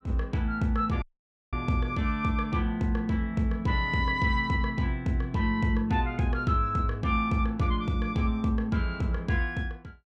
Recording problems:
dropout; at 1 s for 0.5 s

